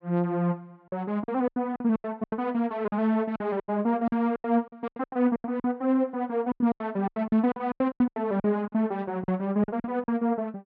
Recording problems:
packet loss; 17% of the sound replaced, filled with silence

